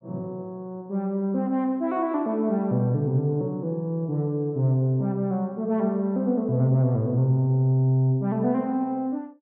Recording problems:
low-pass filter; nothing above 4.2 kHz

